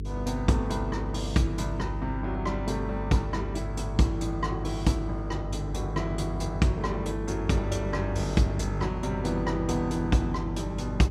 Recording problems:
hum; 50 Hz, harmonics up to 450 Hz, SNR 5 dB

